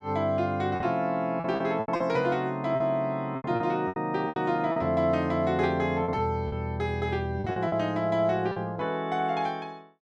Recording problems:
lost packets; 9% of the sound replaced, filled with repeated pitch periods

